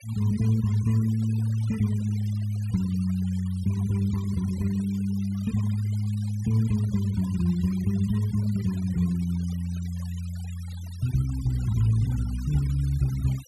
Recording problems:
noise reduction artefacts; signal-to-artefact ratio 21 dB

